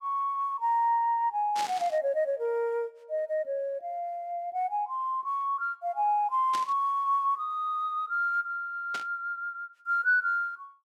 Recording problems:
static burst; at 1.5 s, at 6.5 s and at 9 s; peak -3 dB vs average level

